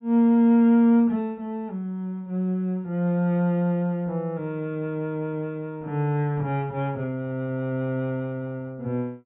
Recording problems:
treble cut off; nothing above 4 kHz

